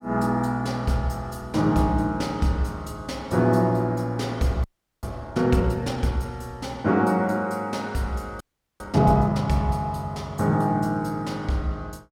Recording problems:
frozen audio; at 4.5 s and at 8.5 s

